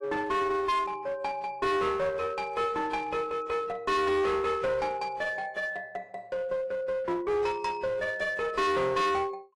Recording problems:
codec artefacts; AAC, log-spectral distance 2 dB, nothing above 11.6 kHz
distorted audio; hard clipping, uneven, signal-to-distortion ratio 6 dB

